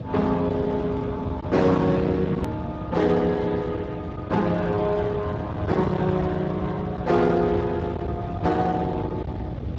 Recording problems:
lossy compression; Speex, log-spectral distance 3 dB
distortion; hard clipping, signal-to-distortion ratio 12 dB
low-frequency rumble; below 440 Hz, SNR 7 dB
hard cut with a click; at 2.5 s

